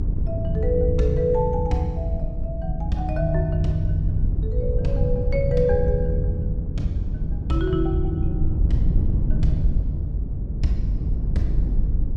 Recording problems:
hum; 50 Hz, harmonics up to 500 Hz, SNR 18 dB
rumble; below 80 Hz, strongest tone 48 Hz, SNR 5 dB
wind noise; below 98 Hz, SNR 1 dB

